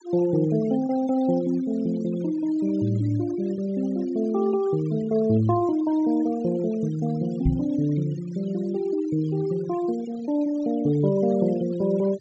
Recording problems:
low-pass filter; nothing above 8 kHz
noise reduction artefacts; signal-to-artefact ratio 21 dB
knock on the microphone; at 7.5 s; peak +5 dB vs average level

